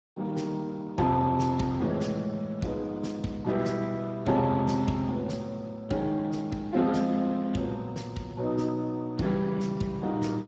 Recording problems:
lossy compression; Speex, log-spectral distance 3 dB

